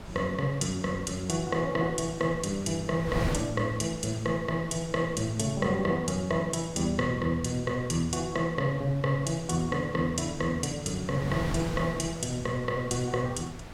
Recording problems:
wind noise; below 580 Hz, SNR 12 dB

